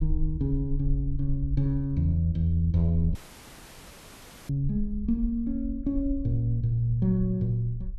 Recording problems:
rumble; below 54 Hz, SNR 9 dB
dropout; at 3 s for 1.5 s

